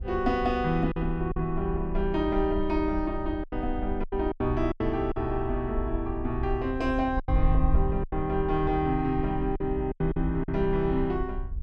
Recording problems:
wind on the microphone; below 62 Hz, SNR 6 dB
lost packets; 7% of the sound replaced, filled with silence

